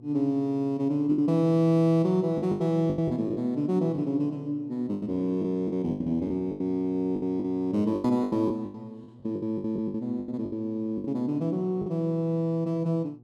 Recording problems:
hum; 60 Hz, harmonics up to 720 Hz, SNR 24 dB
packet loss; 12% of the sound replaced, filled with the last packet

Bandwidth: 13 kHz